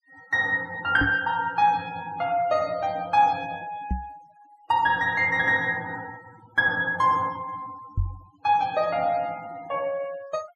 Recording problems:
denoising artefacts; signal-to-artefact ratio 24 dB
microphone bump; at 1 s, at 4 s and at 8 s; peak +1 dB vs average level

